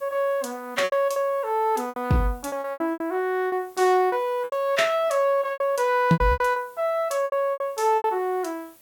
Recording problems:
background hiss; slope -2 dB per octave, SNR 28 dB
packet loss; 13% of the sound replaced, filled with repeated pitch periods

